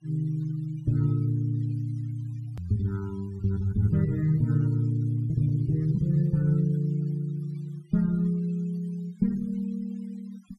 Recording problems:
noise reduction artefacts; signal-to-artefact ratio 27 dB
edit click; at 2.5 s

